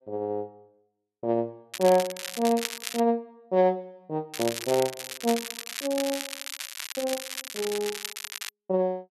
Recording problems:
crackling; from 1.5 to 3 s and from 4.5 to 8.5 s; loose cable, SNR 7 dB

